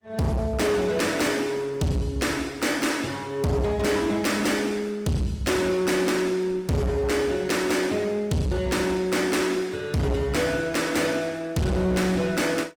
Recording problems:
lossy codec; Opus, log-spectral distance 3 dB, nothing above 19 kHz
distorted audio; hard clipping, signal-to-distortion ratio 8 dB

